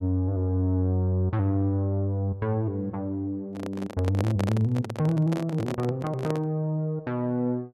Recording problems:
microphone handling noise; from 3.5 to 6.5 s; peak 0 dB vs average level

